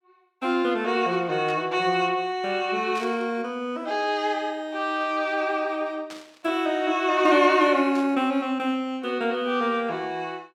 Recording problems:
static burst; 4 times, first at 1.5 s; peak -12 dB vs average level

